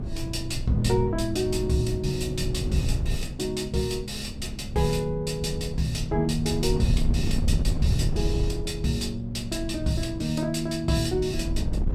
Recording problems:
wind on the microphone; below 110 Hz, SNR 4 dB

